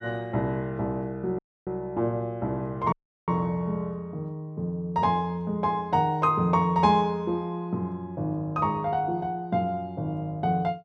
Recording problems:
audio cutting out; at 1.5 s and at 3 s

